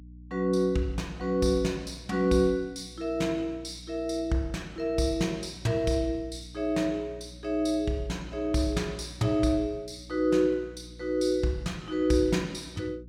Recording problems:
hum; 60 Hz, harmonics up to 300 Hz, SNR 19 dB

